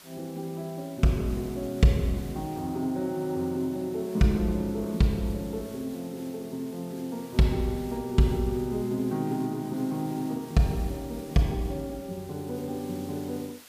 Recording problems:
background hiss; slope 0 dB per octave, SNR 20 dB

